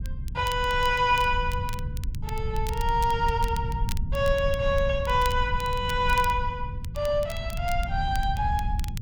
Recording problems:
low-frequency rumble; below 90 Hz, SNR 6 dB
crackling; vinyl, SNR 18 dB

